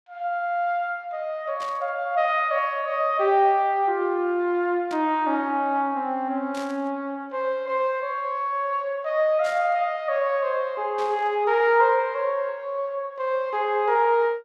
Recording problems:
static burst; 5 times, first at 1.5 s; peak -12 dB vs average level

